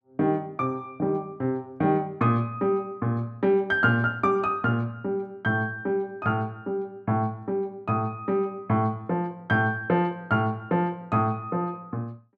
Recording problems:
none

